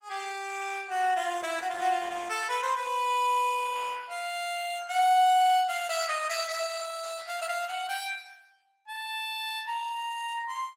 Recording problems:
codec artefacts; Opus, log-spectral distance 6 dB, nothing above 16.5 kHz

